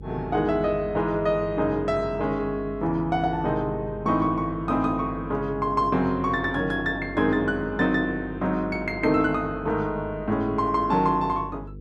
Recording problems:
mains hum; 50 Hz, harmonics up to 500 Hz, SNR 15 dB

